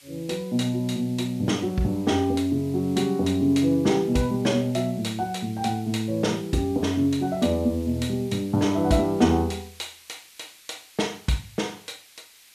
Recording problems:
background hiss; SNR 24 dB

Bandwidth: 14 kHz